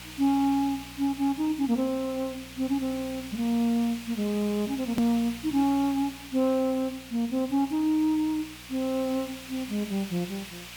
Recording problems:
hum; 60 Hz, harmonics up to 720 Hz, SNR 23 dB
background hiss; SNR 14 dB
hard cut with a click; at 5 s

